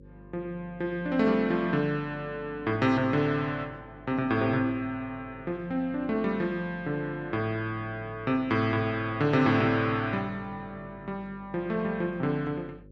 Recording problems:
mains hum; 50 Hz, harmonics up to 550 Hz, SNR 22 dB

